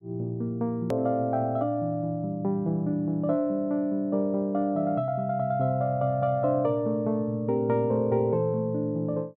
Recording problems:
hard cut with a click; at 1 s

